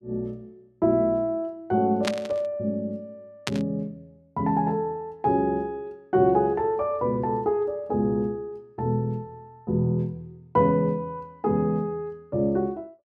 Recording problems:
burst of static; at 2 s and at 3.5 s; peak +2 dB vs average level

